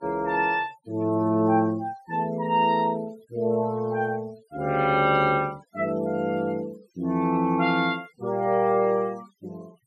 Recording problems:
noise reduction artefacts; signal-to-artefact ratio 28 dB

